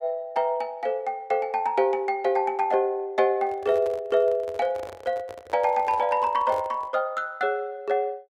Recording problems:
microphone handling noise; from 3.5 to 7 s; peak -8 dB vs average level

